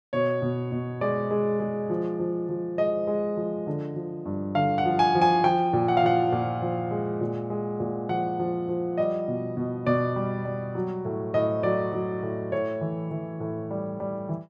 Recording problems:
none

